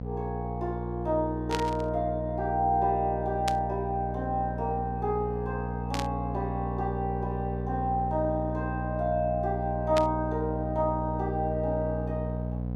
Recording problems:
hum; 60 Hz, harmonics up to 780 Hz, SNR 4 dB
static burst; 4 times, first at 1.5 s; peak +1 dB vs average level

